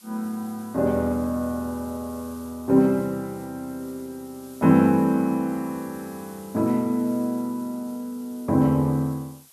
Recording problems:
background hiss; slope +1 dB per octave, SNR 24 dB

